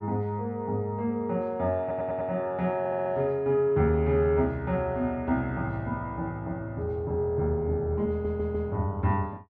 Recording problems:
stutter; at 2 s, at 3 s and at 8 s

